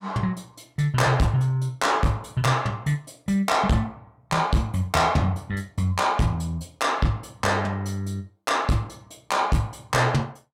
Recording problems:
distorted audio; soft clipping, signal-to-distortion ratio 11 dB

